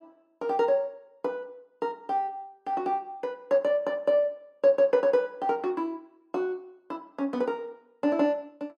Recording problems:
none

